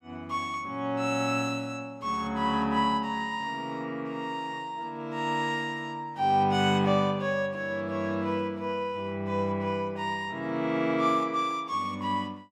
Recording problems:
none

